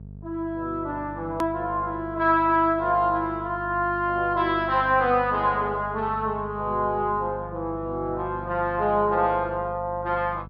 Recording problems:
treble missing; nothing above 5.5 kHz
electrical hum; 50 Hz, harmonics up to 500 Hz, SNR 15 dB
click at an edit; at 1.5 s

